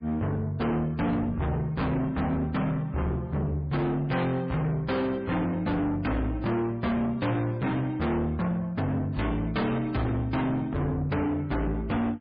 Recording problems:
lossy compression; MP3, log-spectral distance 2 dB, nothing above 4.8 kHz
distorted audio; soft clipping, signal-to-distortion ratio 7 dB

